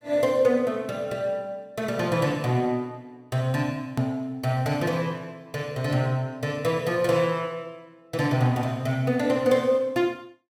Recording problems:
hard cut with a click; at 4 s

